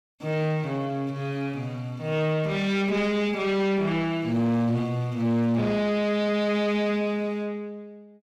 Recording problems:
distortion; soft clipping, signal-to-distortion ratio 8 dB

